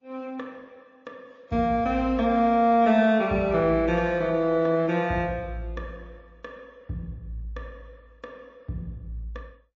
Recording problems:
codec artefacts; Opus, then MP3, log-spectral distance 2 dB

